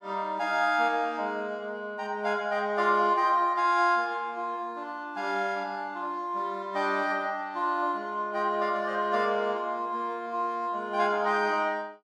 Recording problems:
none

